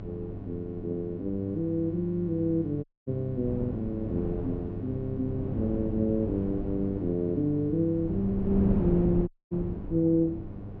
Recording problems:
low-pass filter; nothing above 8 kHz
hum; 50 Hz, harmonics up to 800 Hz, SNR 10 dB
wind on the microphone; below 280 Hz, SNR 7 dB
audio cutting out; at 3 s and at 9.5 s

